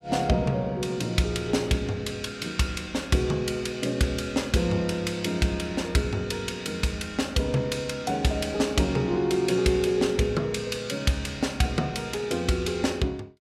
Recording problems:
none

